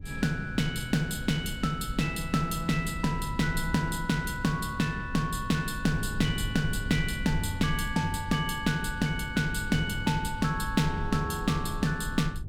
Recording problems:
rumble; below 86 Hz, SNR 10 dB

